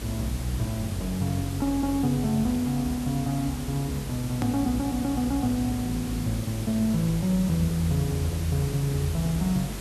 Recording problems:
hum; 50 Hz, harmonics up to 550 Hz, SNR 13 dB
hiss; slope -3 dB per octave, SNR 12 dB
hard cut with a click; at 4.5 s

